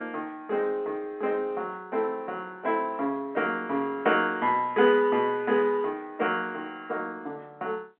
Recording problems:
telephone audio; 300 Hz to 3.7 kHz, G.711

